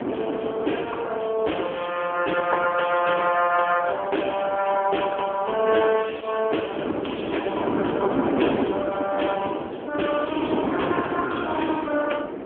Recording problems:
telephone audio; 300 Hz to 3.3 kHz, AMR-NB
wind on the microphone; below 520 Hz, SNR 4 dB

